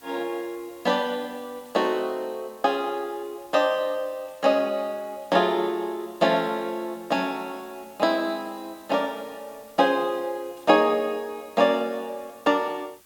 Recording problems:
hiss; slope -1 dB per octave, SNR 26 dB

